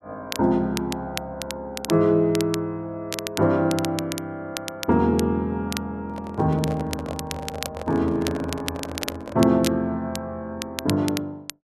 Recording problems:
crackling; vinyl, SNR 10 dB
microphone handling noise; from 6 to 9.5 s; peak -5 dB vs average level

